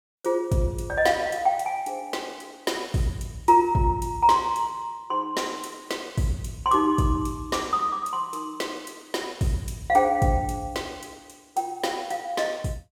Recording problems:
none

